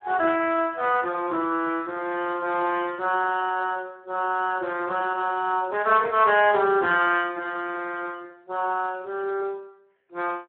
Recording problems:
phone line; 260 Hz to 3.1 kHz, Speex

